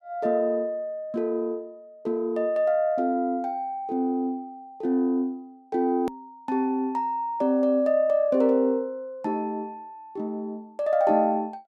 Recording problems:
hard cut with a click; at 6 s

